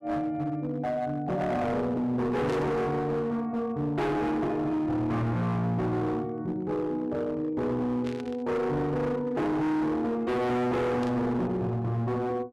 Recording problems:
distortion; hard clipping, signal-to-distortion ratio 7 dB
burst of static; at 2.5 s, at 8 s and at 11 s; peak -10 dB vs average level

